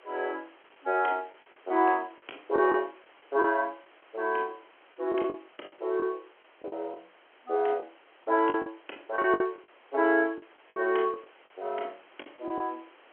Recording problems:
telephone audio; 280 Hz to 3.4 kHz, G.711
hiss; SNR 27 dB
packet loss; 9% of the sound replaced, filled with the last packet

